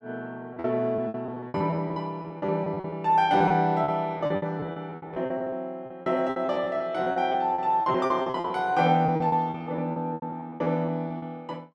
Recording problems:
packet loss; 19% of the sound replaced, filled with repeated pitch periods

